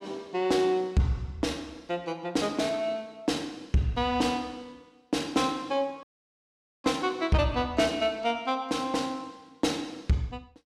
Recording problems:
distortion; soft clipping, signal-to-distortion ratio 12 dB
audio cutting out; at 6 s for 1 s

